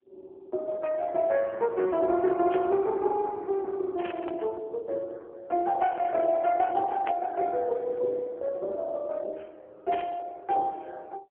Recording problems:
telephone audio; 300 Hz to 3 kHz, AMR-NB
static burst; 4 times, first at 2.5 s; peak -6 dB vs average level

